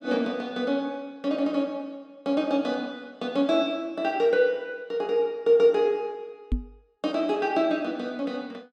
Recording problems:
knock on the microphone; at 6.5 s; peak +2 dB vs average level

